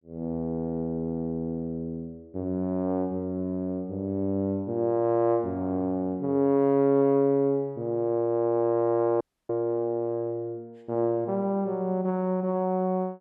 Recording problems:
dropout; at 9 s

